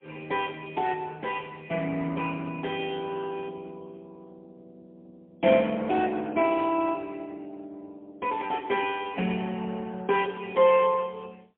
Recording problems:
telephone audio; 240 Hz to 3.4 kHz, AMR-NB, then MP3

